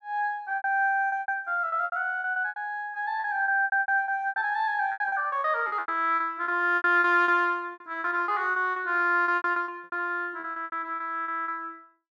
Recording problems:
packet loss; 19% of the sound replaced, filled with repeated pitch periods

